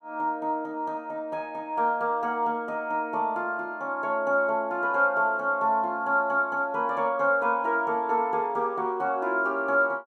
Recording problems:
none

